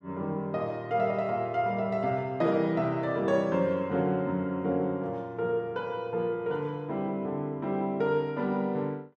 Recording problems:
none

